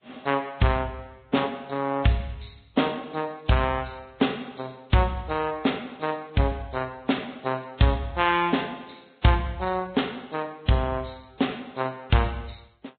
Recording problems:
treble missing; nothing above 3.9 kHz
lossy codec; Vorbis, log-spectral distance 7 dB

